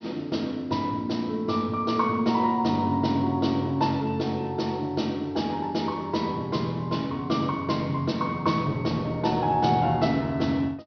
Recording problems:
low-pass filter; nothing above 6.1 kHz

